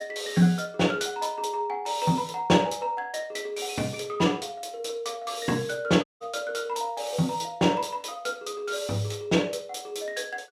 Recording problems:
dropout; at 6 s

